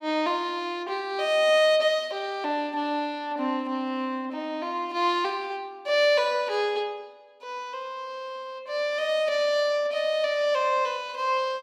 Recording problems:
none

